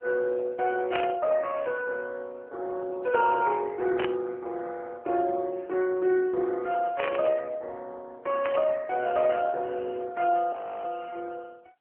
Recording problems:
telephone audio; 300 Hz to 3.3 kHz, AMR-NB
static burst; 4 times, first at 1 s; peak 0 dB vs average level
frozen audio; at 11 s

